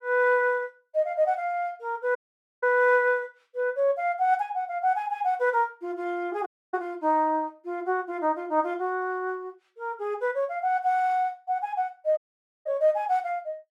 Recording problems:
dropout; at 2 s, at 6.5 s and at 12 s

